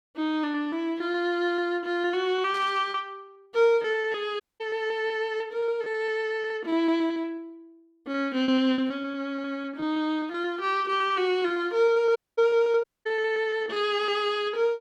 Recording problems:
packet loss; 11% of the sound replaced, filled with repeated pitch periods
burst of static; at 2.5 s; peak -13 dB vs average level
audio cutting out; at 4.5 s, at 12 s and at 13 s

